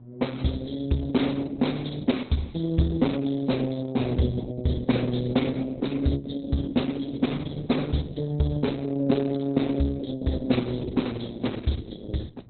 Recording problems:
codec artefacts; Opus, log-spectral distance 7 dB, nothing above 4.1 kHz
mains hum; 60 Hz, harmonics up to 720 Hz, SNR 24 dB

